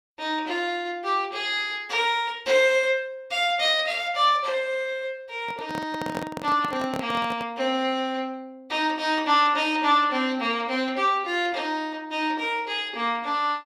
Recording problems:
microphone handling noise; from 5.5 to 7.5 s; peak -3 dB vs average level

